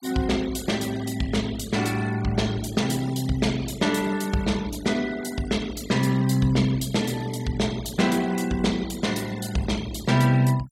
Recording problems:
denoising artefacts; signal-to-artefact ratio 17 dB

